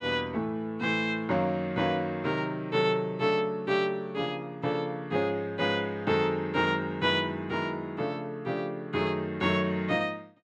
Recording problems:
none

